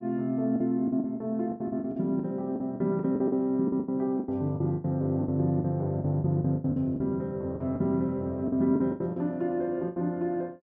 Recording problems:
lost packets; 16% of the sound replaced, filled with the last packet

